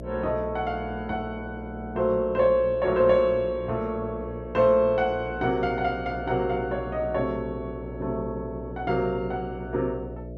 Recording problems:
hum; 60 Hz, harmonics up to 660 Hz, SNR 12 dB

